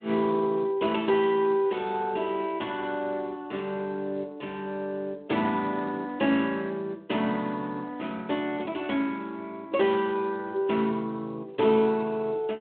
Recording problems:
telephone audio; 190 Hz to 3.3 kHz, Speex

